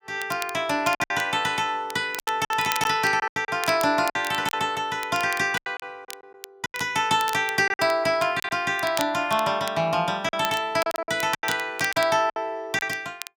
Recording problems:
crackle; vinyl, SNR 14 dB
lost packets; 10% of the sound replaced, filled with silence

